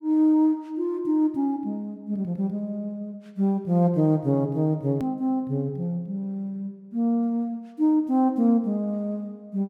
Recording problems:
hard cut with a click; at 5 s

